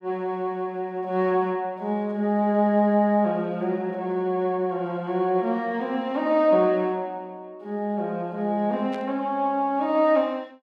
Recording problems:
burst of static; at 9 s; peak -14 dB vs average level

